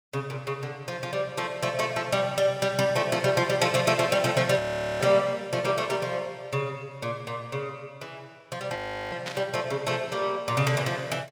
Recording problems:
audio freezing; at 4.5 s and at 9 s
static burst; at 9.5 s; peak -3 dB vs average level

